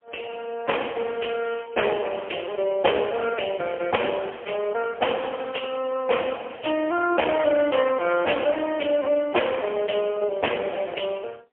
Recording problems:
phone line; 280 Hz to 3.2 kHz, AMR-NB, then MP3

